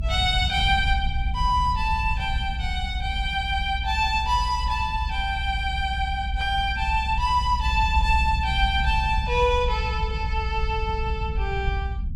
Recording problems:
rumble; below 70 Hz, SNR 4 dB

